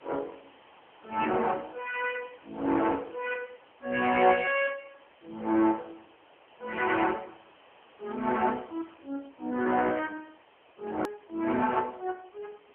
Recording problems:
telephone audio; 220 Hz to 3.3 kHz, AMR-NB
hiss; SNR 27 dB
edit click; at 11 s

